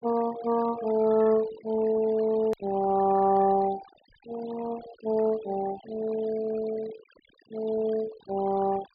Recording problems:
treble missing; nothing above 4.9 kHz
noise reduction artefacts; signal-to-artefact ratio 18 dB
click at an edit; at 2.5 s

